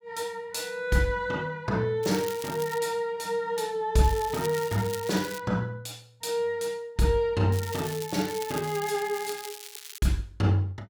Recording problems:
crackle; at 2 s, from 4 to 5.5 s and from 7.5 to 10 s; loose cable, SNR 12 dB

